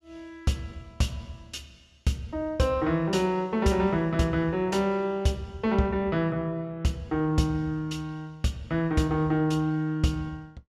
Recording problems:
none

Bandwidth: 14 kHz